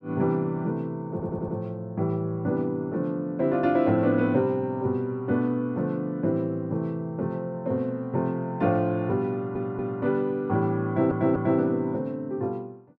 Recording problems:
audio stuttering; at 1 s, at 9.5 s and at 11 s

